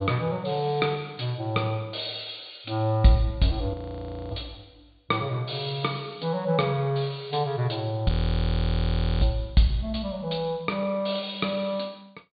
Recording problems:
treble missing; nothing above 4.7 kHz
audio freezing; at 3.5 s for 0.5 s and at 8 s for 1 s

